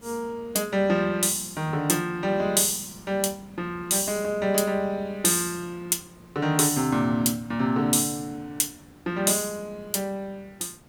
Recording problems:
background hiss; slope -5 dB per octave, SNR 27 dB

